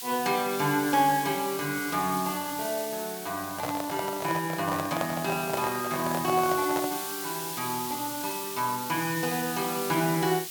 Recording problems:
background hiss; SNR 7 dB
handling noise; from 3.5 to 7 s; peak +2 dB vs average level

